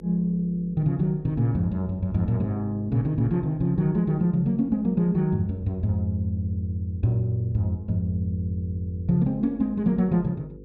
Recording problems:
hum; 50 Hz, harmonics up to 500 Hz, SNR 21 dB

